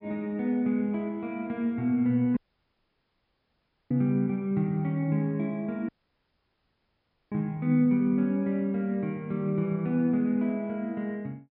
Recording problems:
treble cut off; nothing above 5.5 kHz
audio cutting out; at 2.5 s for 1.5 s and at 6 s for 1.5 s

